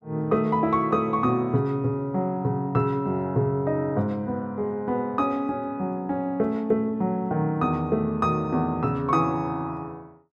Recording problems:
none

